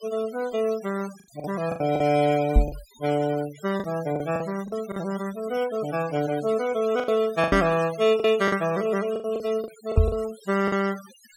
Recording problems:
denoising artefacts; signal-to-artefact ratio 17 dB
lost packets; 9% of the sound replaced, filled with the last packet
microphone thump; at 2.5 s, at 7.5 s and at 10 s; peak +9 dB vs average level

